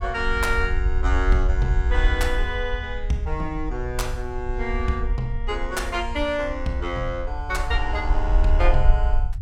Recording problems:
low-frequency rumble; below 58 Hz, SNR 0 dB

